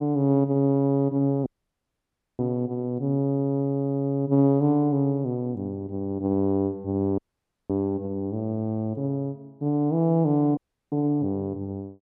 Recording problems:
dropout; at 1.5 s for 1 s, at 7 s for 0.5 s and at 11 s

